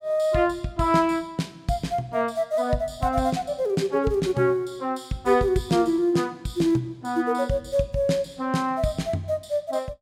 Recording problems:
none

